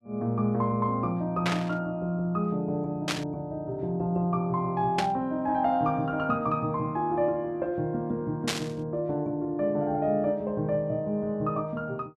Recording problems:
static burst; 4 times, first at 1.5 s; peak +4 dB vs average level

